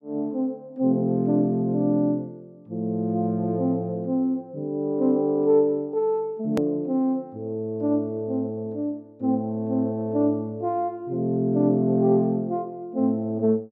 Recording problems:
edit click; at 6.5 s

